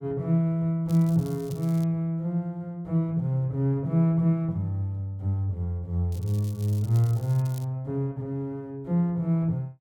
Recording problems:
crackling; at 1 s and from 6 to 7.5 s; loose cable, SNR 23 dB

